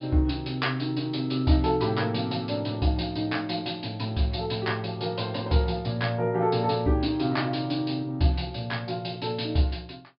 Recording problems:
treble cut off; nothing above 5.1 kHz

